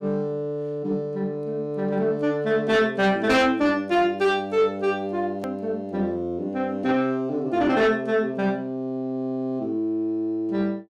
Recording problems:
distorted audio; soft clipping, signal-to-distortion ratio 11 dB
edit click; at 5.5 s

